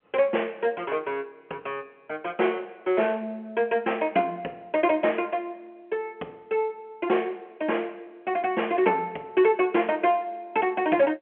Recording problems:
phone line; 260 Hz to 3.2 kHz, G.711

